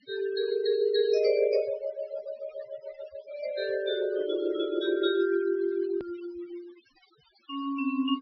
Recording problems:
treble missing; nothing above 5.5 kHz
denoising artefacts; signal-to-artefact ratio 19 dB
click at an edit; at 6 s

